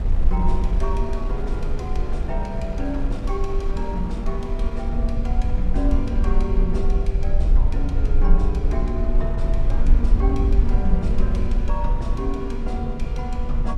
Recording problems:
rumble; below 50 Hz, SNR -5 dB
wind noise; below 450 Hz, SNR 9 dB

